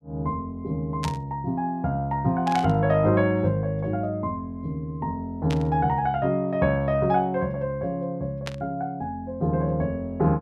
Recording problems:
static burst; 4 times, first at 1 s; peak -3 dB vs average level

